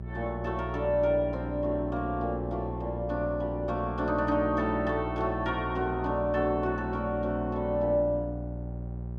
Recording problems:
mains hum; 60 Hz, harmonics up to 600 Hz, SNR 8 dB

